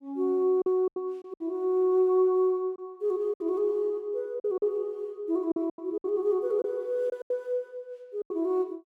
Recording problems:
lost packets; 9% of the sound replaced, filled with silence

